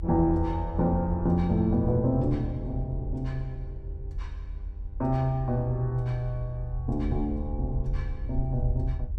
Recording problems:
hum; 50 Hz, harmonics up to 1.5 kHz, SNR 28 dB
low-frequency rumble; below 76 Hz, SNR 7 dB

